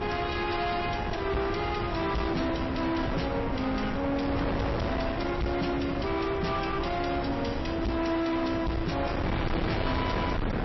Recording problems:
lossy compression; MP3, log-spectral distance 4 dB, nothing above 5.7 kHz
distortion; soft clipping, signal-to-distortion ratio 5 dB
wind noise; below 690 Hz, SNR 3 dB

